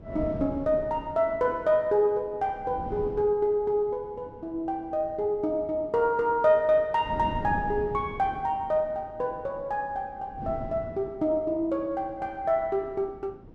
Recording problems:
wind noise; below 310 Hz, SNR 15 dB

